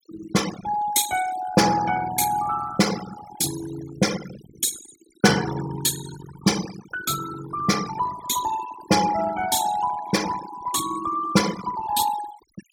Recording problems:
noise reduction artefacts; signal-to-artefact ratio 11 dB

